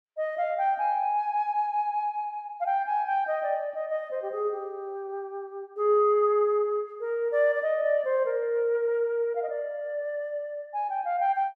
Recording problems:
none

